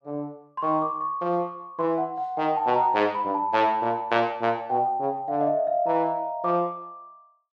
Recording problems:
none

